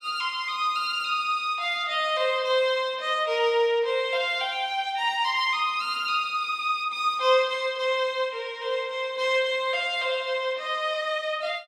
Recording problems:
none

